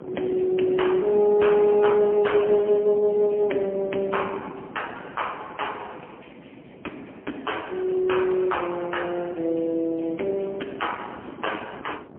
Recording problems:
telephone audio; 240 Hz to 3.2 kHz, AMR-NB, then MP3
wind noise; below 440 Hz, SNR 17 dB

